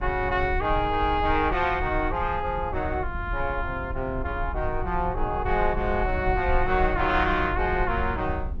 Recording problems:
low-frequency rumble; below 72 Hz, SNR 8 dB

